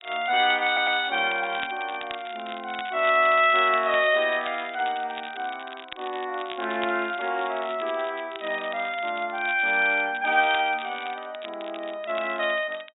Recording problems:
treble cut off; nothing above 4 kHz
crackle; vinyl, SNR 17 dB
stutter; at 0.5 s

